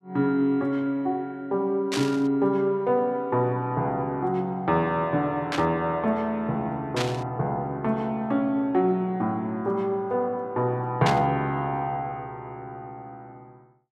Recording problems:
static burst; 4 times, first at 2 s; peak +1 dB vs average level

